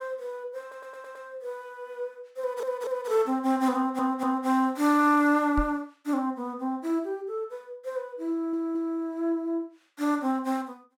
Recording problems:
stutter; 4 times, first at 0.5 s
knock on the microphone; at 5.5 s; peak 0 dB vs average level

